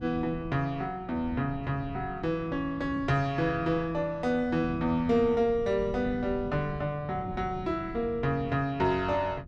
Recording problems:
wind on the microphone; below 190 Hz, SNR 14 dB

